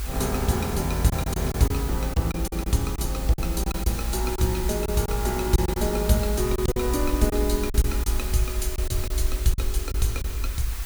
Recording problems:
hum; 50 Hz, harmonics up to 450 Hz, SNR 21 dB
background hiss; SNR 10 dB
rumble; below 54 Hz, strongest tone 52 Hz, SNR 4 dB
lost packets; 7% of the sound replaced, filled with silence

